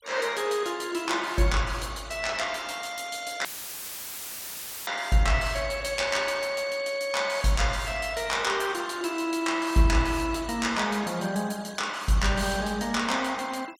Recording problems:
noise reduction artefacts; signal-to-artefact ratio 22 dB
audio cutting out; at 3.5 s for 1.5 s; filled with static

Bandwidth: 17 kHz